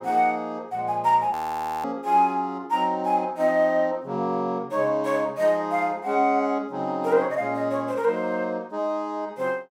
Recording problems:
audio freezing; at 1.5 s for 0.5 s

